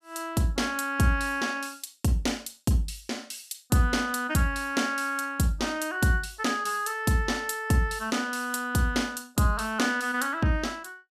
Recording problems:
none

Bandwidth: 15 kHz